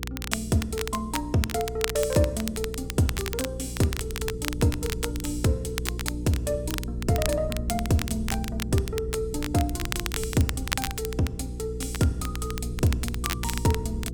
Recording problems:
hum; 60 Hz, harmonics up to 480 Hz, SNR 7 dB
low-frequency rumble; below 110 Hz, SNR 13 dB
crackle; vinyl, SNR 7 dB

